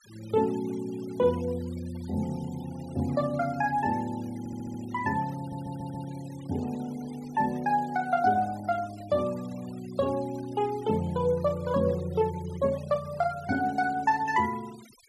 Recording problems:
noise reduction artefacts; signal-to-artefact ratio 22 dB
audio stuttering; at 4.5 s and at 5.5 s

